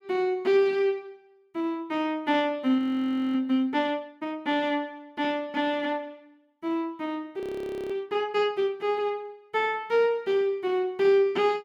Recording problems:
frozen audio; at 3 s for 0.5 s and at 7.5 s for 0.5 s

